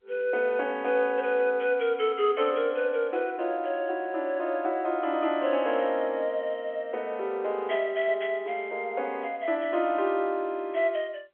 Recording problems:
telephone audio; 300 Hz to 3.3 kHz, G.711

